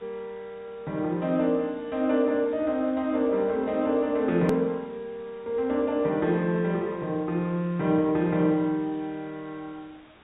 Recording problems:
low-pass filter; nothing above 4 kHz
background hiss; SNR 27 dB
hard cut with a click; at 4.5 s

